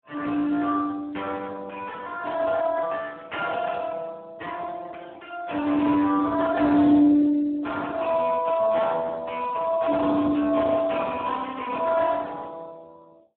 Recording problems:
phone line; 190 Hz to 2.7 kHz, Speex

